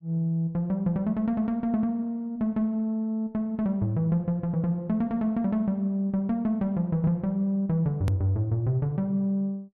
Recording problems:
hard cut with a click; at 8 s

